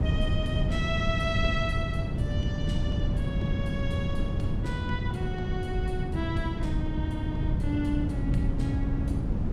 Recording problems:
wind on the microphone; below 170 Hz, SNR -4 dB

